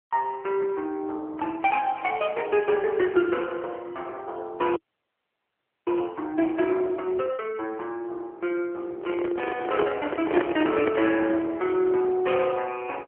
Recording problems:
telephone audio; 280 Hz to 3.3 kHz, AMR-NB
frozen audio; at 5 s for 1 s
microphone handling noise; from 9 to 11 s; peak +5 dB vs average level

